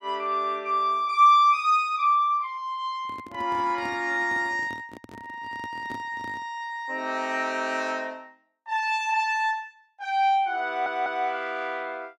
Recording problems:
handling noise; from 3 to 6.5 s; peak -11 dB vs average level
stutter; at 11 s

